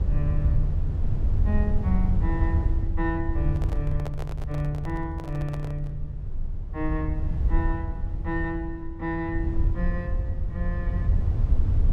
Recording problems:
low-frequency rumble; below 82 Hz, SNR -4 dB
handling noise; from 3.5 to 6 s; peak -2 dB vs average level

